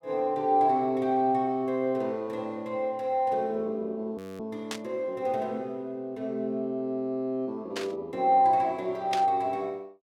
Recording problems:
frozen audio; at 4 s
static burst; at 4.5 s, at 8 s and at 9 s; peak -1 dB vs average level

